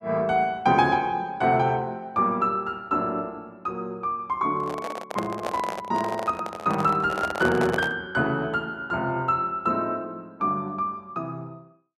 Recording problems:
handling noise; from 4.5 to 8 s; peak 0 dB vs average level

